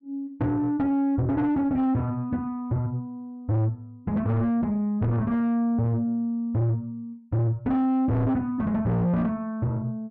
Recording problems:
distorted audio; soft clipping, signal-to-distortion ratio 6 dB

